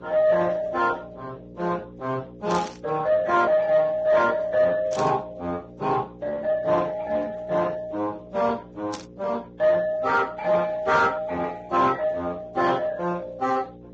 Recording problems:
codec artefacts; Speex, then Vorbis, log-spectral distance 3 dB, nothing above 7.1 kHz
distortion; soft clipping, signal-to-distortion ratio 11 dB
mains hum; 60 Hz, harmonics up to 540 Hz, SNR 20 dB
burst of static; at 2.5 s, at 5 s and at 9 s; peak -7 dB vs average level

